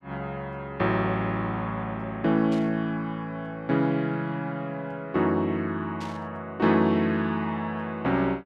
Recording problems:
static burst; at 2.5 s and at 6 s; peak -12 dB vs average level

